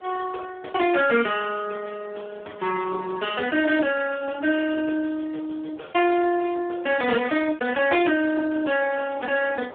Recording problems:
telephone audio; 280 Hz to 2.8 kHz, Speex
wind noise; below 940 Hz, SNR 23 dB

